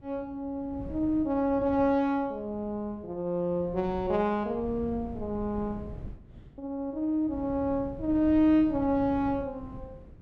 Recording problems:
wind on the microphone; below 190 Hz, SNR 16 dB

